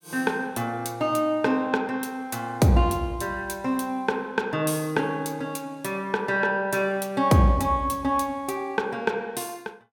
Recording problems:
none

